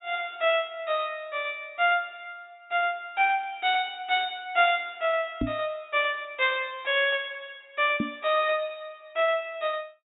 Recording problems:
low-pass filter; nothing above 4 kHz
microphone thump; at 5.5 s and at 8 s; peak +3 dB vs average level

